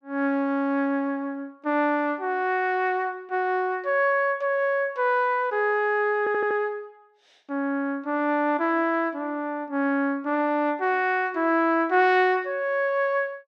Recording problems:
stutter; at 6 s

